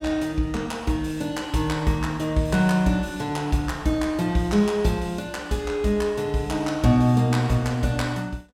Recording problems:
none

